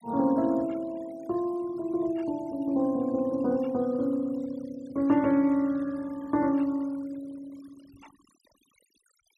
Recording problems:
denoising artefacts; signal-to-artefact ratio 25 dB

